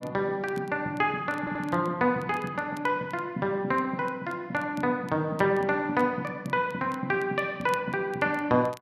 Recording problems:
crackle; vinyl, SNR 27 dB
stutter; at 1.5 s

